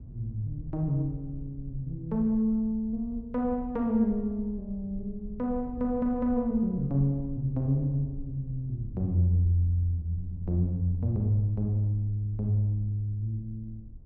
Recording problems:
low-frequency rumble; below 68 Hz, SNR 16 dB

